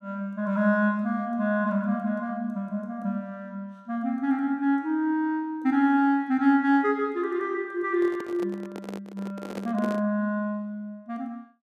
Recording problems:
handling noise; from 8 to 10 s; peak -6 dB vs average level

